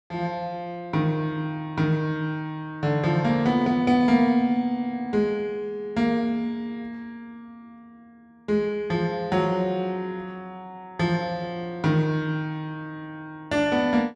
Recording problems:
none

